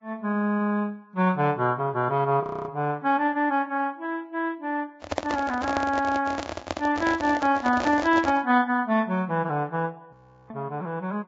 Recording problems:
codec artefacts; Vorbis, log-spectral distance 2 dB
audio freezing; at 2.5 s and at 10 s
microphone handling noise; from 5 to 8.5 s; peak +2 dB vs average level

